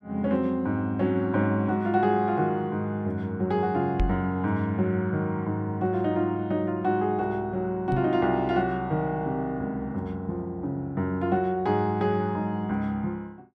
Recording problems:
knock on the microphone; at 4 s and at 8 s; peak +3 dB vs average level

